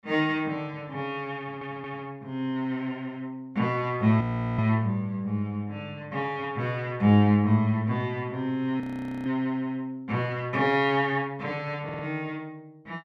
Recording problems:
audio stuttering; at 1.5 s and at 12 s
audio freezing; at 4 s and at 9 s

